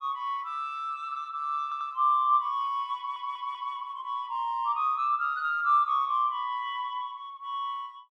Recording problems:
stutter; at 1.5 s and at 3 s

